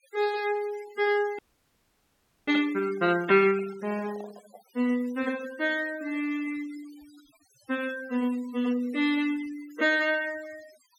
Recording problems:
noise reduction artefacts; signal-to-artefact ratio 20 dB
frozen audio; at 1.5 s for 1 s
microphone handling noise; from 3 to 5 s; peak -15 dB vs average level

